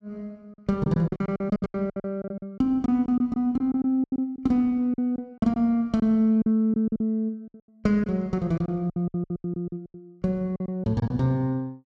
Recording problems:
packet loss; 16% of the sound replaced, filled with silence

